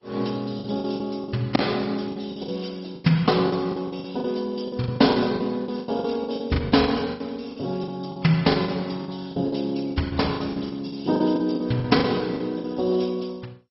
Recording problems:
lossy compression; Vorbis, then MP2, log-spectral distance 5 dB, nothing above 5.5 kHz
packet loss; 15% of the sound replaced, filled with the last packet

